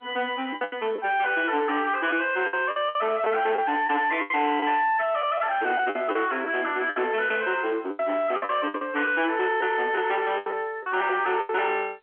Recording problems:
phone line; 260 Hz to 3.4 kHz, G.711
distorted audio; soft clipping, signal-to-distortion ratio 10 dB
lost packets; 10% of the sound replaced, filled with the last packet

